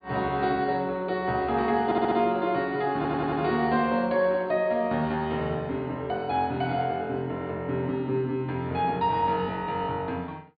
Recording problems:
treble cut off; nothing above 4.6 kHz
stutter; at 2 s and at 3 s

